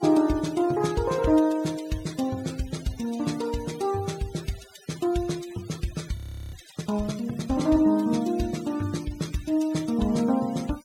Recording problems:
denoising artefacts; signal-to-artefact ratio 19 dB
audio freezing; at 6 s

